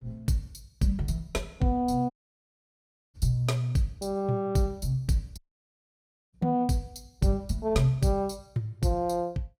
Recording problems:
audio cutting out; at 2 s for 1 s and at 5.5 s for 1 s

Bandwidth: 16 kHz